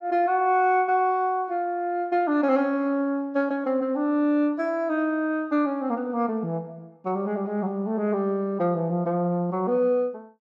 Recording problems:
none

